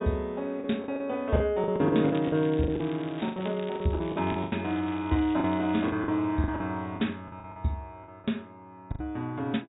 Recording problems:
treble missing; nothing above 4 kHz
packet loss; 13% of the sound replaced, filled with the last packet
crackle; from 2 to 6 s; loose cable, SNR 19 dB

